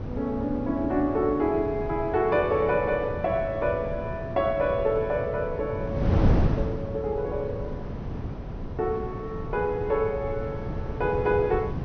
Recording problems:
treble missing; nothing above 6.2 kHz
wind on the microphone; below 260 Hz, SNR 5 dB

